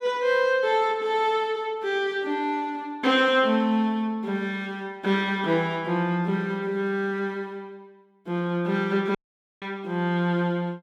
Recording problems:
dropout; at 9 s

